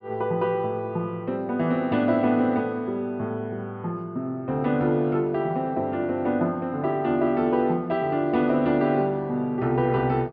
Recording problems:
treble missing; nothing above 5.5 kHz

